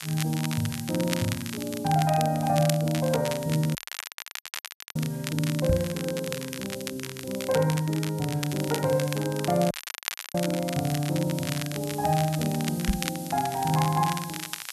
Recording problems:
background hiss; slope +5 dB per octave, SNR 16 dB
crackling; vinyl, SNR 9 dB
dropout; at 4 s for 1 s and at 9.5 s for 0.5 s
microphone bump; at 5.5 s and at 13 s; peak +5 dB vs average level

